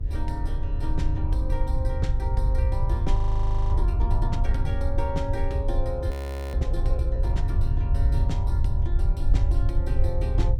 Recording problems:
mains hum; 50 Hz, harmonics up to 500 Hz, SNR 18 dB
rumble; below 76 Hz, SNR -8 dB
wind noise; below 340 Hz, SNR 18 dB
audio freezing; at 3 s for 0.5 s and at 6 s

